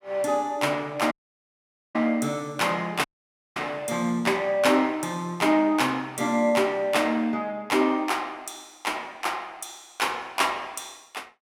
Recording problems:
dropout; at 1 s for 1 s and at 3 s for 0.5 s

